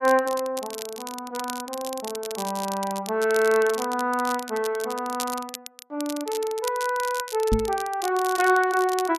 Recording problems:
crackling; vinyl, SNR 11 dB
microphone thump; at 7.5 s; peak +5 dB vs average level

